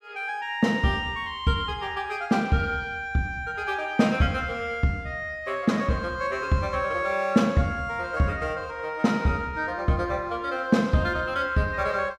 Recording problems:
none

